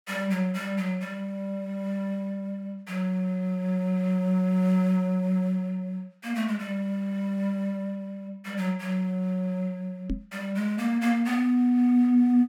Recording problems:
knock on the microphone; at 10 s; peak +1 dB vs average level

